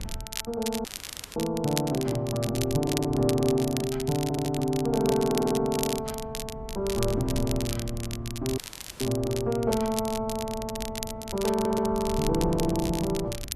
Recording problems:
wind noise; below 100 Hz, SNR 14 dB
crackling; vinyl, SNR 9 dB
dropout; at 1 s for 0.5 s and at 8.5 s
audio stuttering; 4 times, first at 3 s

